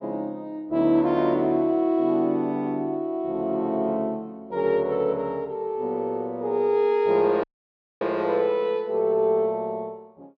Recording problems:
audio cutting out; at 7.5 s for 0.5 s

